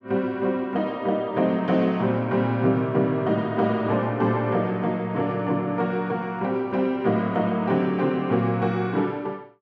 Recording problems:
none

